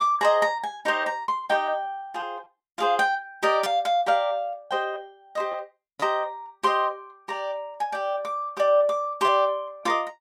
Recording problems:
packet loss; 3% of the sound replaced, filled with repeated pitch periods

